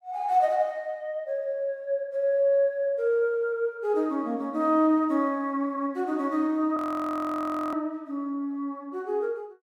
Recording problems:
audio freezing; at 7 s for 1 s

